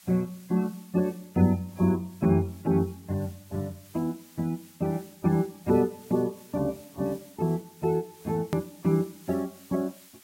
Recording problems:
lossy codec; MP3, log-spectral distance 2 dB, nothing above 16.1 kHz
background hiss; slope +3 dB per octave, SNR 24 dB
hard cut with a click; at 8.5 s

